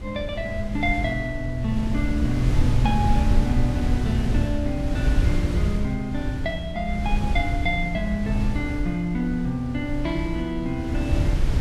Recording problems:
wind on the microphone; below 100 Hz, SNR 0 dB

